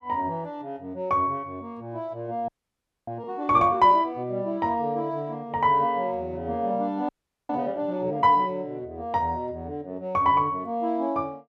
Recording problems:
audio freezing; at 2.5 s for 0.5 s and at 7 s

